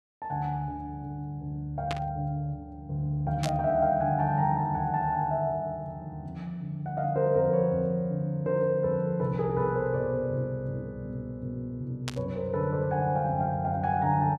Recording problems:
static burst; at 2 s, at 3.5 s and at 12 s; peak -1 dB vs average level

